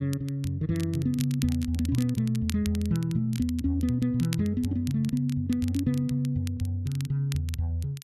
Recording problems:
crackling; vinyl, SNR 17 dB

